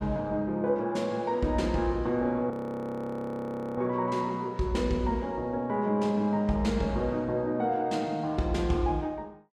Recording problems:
audio freezing; at 2.5 s for 1.5 s

